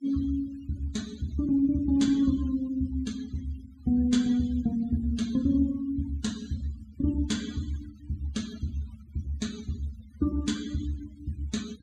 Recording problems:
denoising artefacts; signal-to-artefact ratio 19 dB

